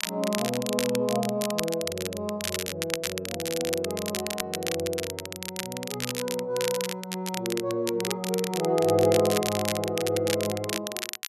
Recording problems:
crackling; vinyl, SNR 4 dB

